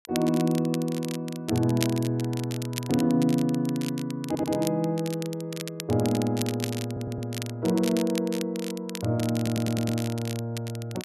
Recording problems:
crackling; vinyl, SNR 12 dB
stutter; at 4.5 s, at 7 s and at 9.5 s

